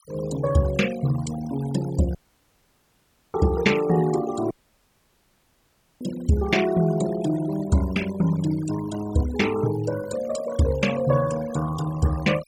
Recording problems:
denoising artefacts; signal-to-artefact ratio 13 dB
dropout; at 2 s for 1 s and at 4.5 s for 1.5 s

